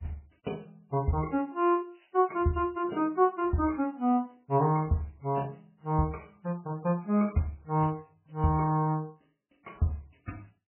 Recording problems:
codec artefacts; MP3, log-spectral distance 4 dB, nothing above 2.5 kHz

